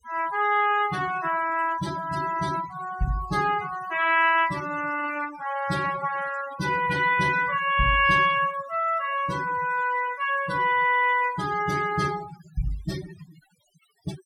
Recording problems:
noise reduction artefacts; signal-to-artefact ratio 16 dB

